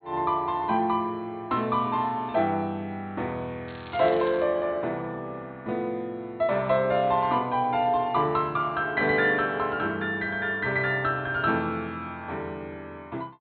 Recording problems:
treble cut off; nothing above 4.3 kHz
crackle; at 3.5 s; loose cable, SNR 21 dB

